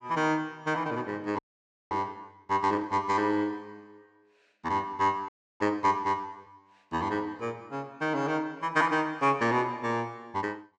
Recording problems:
frozen audio; at 1.5 s for 0.5 s and at 5.5 s

